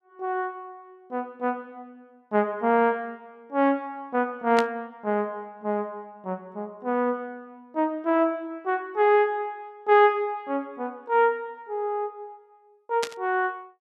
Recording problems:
burst of static; at 4.5 s and at 13 s; peak +1 dB vs average level

